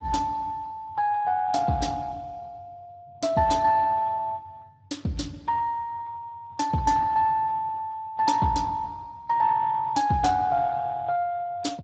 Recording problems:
lossy compression; Speex, log-spectral distance 3 dB, nothing above 7.8 kHz

